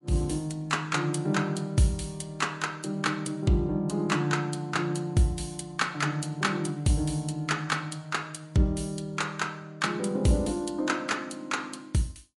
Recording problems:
codec artefacts; MP3, log-spectral distance 3 dB

